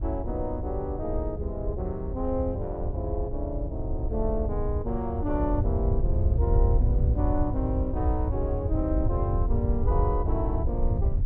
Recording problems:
wind on the microphone; below 92 Hz, SNR -3 dB

